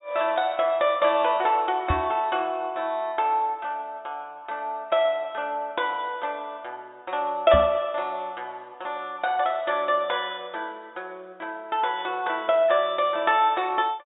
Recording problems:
low-pass filter; nothing above 4 kHz
knock on the microphone; at 2 s and at 7.5 s; peak +2 dB vs average level

